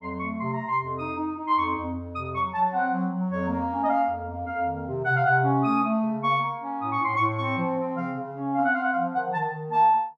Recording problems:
none

